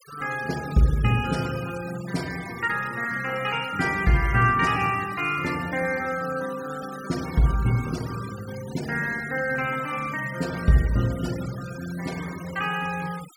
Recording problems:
denoising artefacts; signal-to-artefact ratio 16 dB

